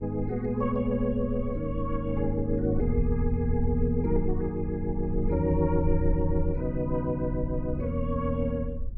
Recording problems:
rumble; below 54 Hz, strongest tone 18 Hz, SNR 8 dB

